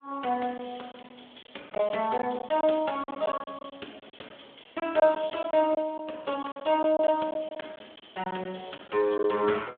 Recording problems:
telephone audio; 280 Hz to 3.5 kHz, Speex
lost packets; 9% of the sound replaced, filled with silence

